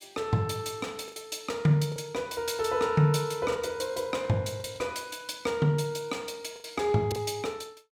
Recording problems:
packet loss; 5% of the sound replaced, filled with the last packet

